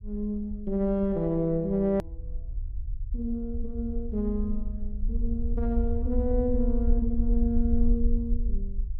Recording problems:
rumble; below 58 Hz, SNR 3 dB
edit click; at 2 s

